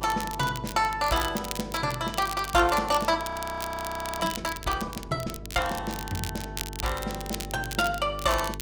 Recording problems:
electrical hum; 50 Hz, harmonics up to 450 Hz, SNR 13 dB
crackling; vinyl, SNR 10 dB
audio freezing; at 3 s for 1 s

